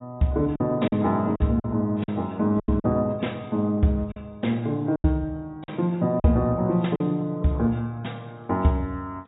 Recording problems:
codec artefacts; AAC, log-spectral distance 2 dB, nothing above 3.8 kHz
lost packets; 6% of the sound replaced, filled with silence

